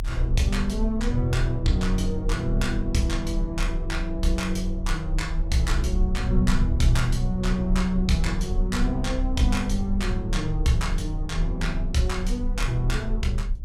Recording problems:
low-frequency rumble; below 46 Hz, strongest tone 34 Hz, SNR 3 dB

